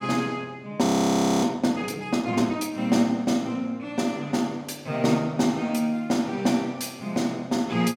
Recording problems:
frozen audio; at 1 s for 0.5 s

